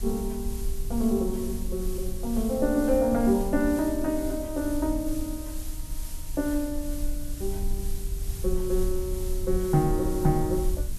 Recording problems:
hiss; slope 0 dB per octave, SNR 15 dB
rumble; below 52 Hz, strongest tone 20 Hz, SNR 8 dB

